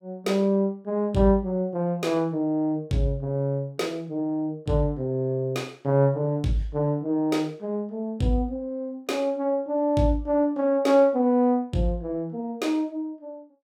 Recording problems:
none

